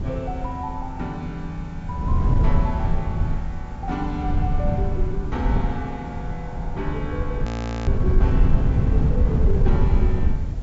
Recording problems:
treble missing; nothing above 8 kHz
background hiss; SNR 23 dB
wind noise; below 100 Hz, SNR -7 dB
audio freezing; at 7.5 s

